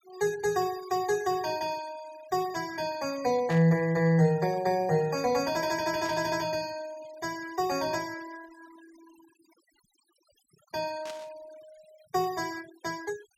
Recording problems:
denoising artefacts; signal-to-artefact ratio 20 dB
static burst; at 3.5 s, at 6 s and at 11 s; peak -9 dB vs average level

